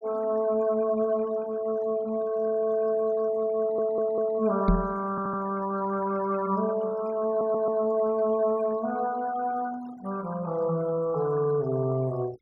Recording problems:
noise reduction artefacts; signal-to-artefact ratio 20 dB
stutter; at 3.5 s, at 5 s and at 7.5 s
knock on the microphone; at 4.5 s; peak +6 dB vs average level

